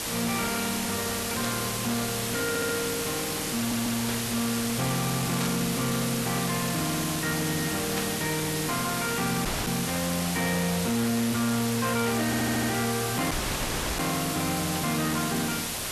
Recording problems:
distortion; soft clipping, signal-to-distortion ratio 6 dB
background hiss; slope -3 dB per octave, SNR 1 dB
static burst; 5 times, first at 1.5 s; peak -11 dB vs average level
audio stuttering; at 2.5 s, at 3.5 s and at 12 s
dropout; at 9.5 s and at 13 s for 0.5 s

